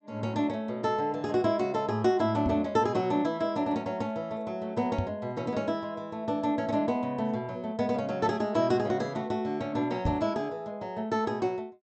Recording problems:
treble missing; nothing above 8 kHz
knock on the microphone; at 2.5 s, at 5 s and at 10 s; peak +4 dB vs average level

